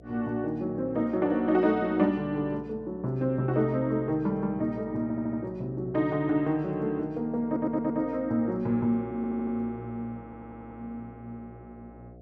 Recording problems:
hum; 60 Hz, harmonics up to 720 Hz, SNR 21 dB
stutter; 4 times, first at 5 s

